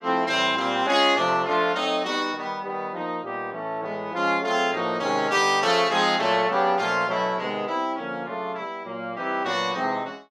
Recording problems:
none

